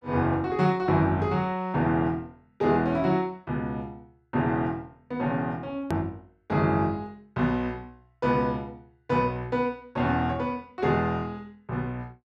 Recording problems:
hard cut with a click; at 6 s

